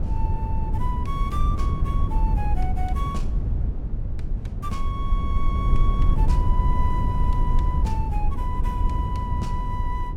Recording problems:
low-frequency rumble; below 80 Hz, SNR -7 dB

